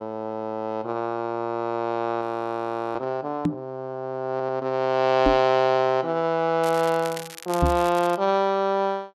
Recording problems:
frozen audio; at 2 s for 0.5 s
microphone thump; at 3.5 s, at 5.5 s and at 7.5 s; peak +5 dB vs average level
stutter; at 4.5 s
crackle; from 6.5 to 8 s; loose cable, SNR 15 dB

